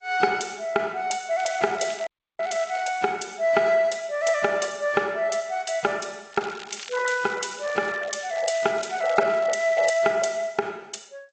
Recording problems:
codec artefacts; AAC, then G.722, log-spectral distance 6 dB, nothing above 7.8 kHz
crackling; from 1.5 to 3 s and from 6.5 to 10 s; loose cable, SNR 19 dB
dropout; at 2 s

